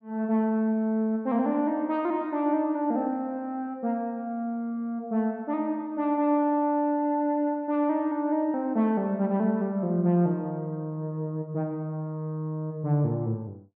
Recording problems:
none

